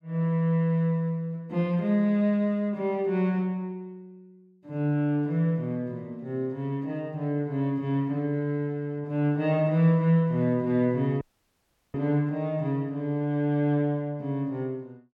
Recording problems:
dropout; at 11 s for 0.5 s

